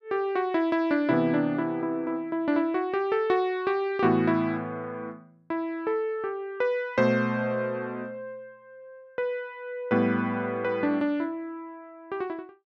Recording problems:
none

